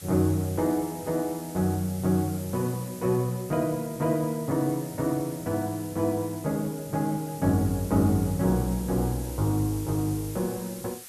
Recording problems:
hiss; slope +1 dB per octave, SNR 15 dB

